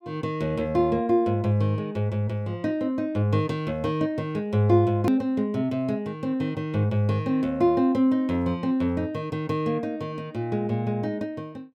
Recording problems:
click at an edit; at 5 s

